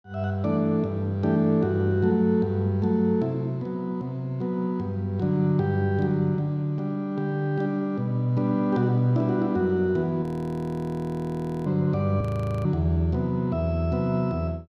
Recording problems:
audio freezing; at 10 s for 1.5 s and at 12 s

